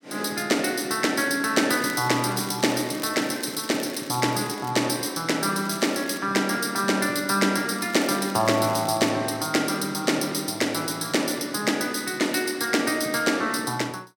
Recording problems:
crackle; from 1.5 to 4.5 s, at 5.5 s and from 8 to 9 s; loose cable, SNR 18 dB

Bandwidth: 17.5 kHz